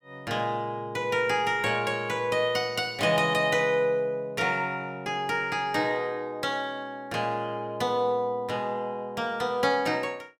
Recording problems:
none

